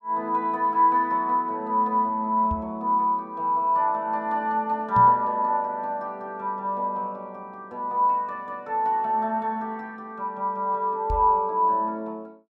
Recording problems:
knock on the microphone; at 2.5 s, at 5 s and at 11 s; peak -2 dB vs average level

